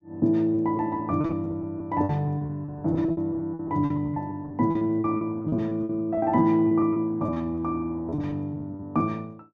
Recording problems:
packet loss; 15% of the sound replaced, filled with repeated pitch periods

